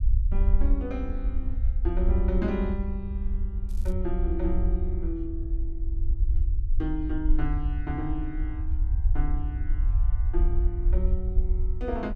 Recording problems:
low-frequency rumble; below 58 Hz, SNR -6 dB
crackle; at 3.5 s; loose cable, SNR 22 dB

